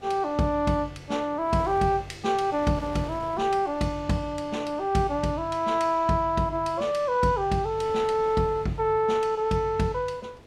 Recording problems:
wind on the microphone; below 940 Hz, SNR 21 dB

